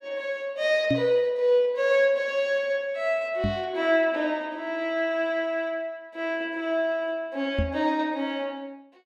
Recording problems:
microphone thump; at 1 s, at 3.5 s and at 7.5 s; peak +3 dB vs average level

